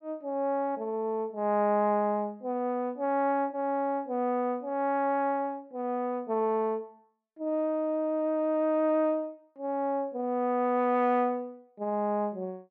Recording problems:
none

